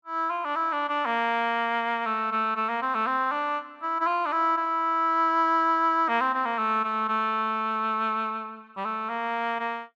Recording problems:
none

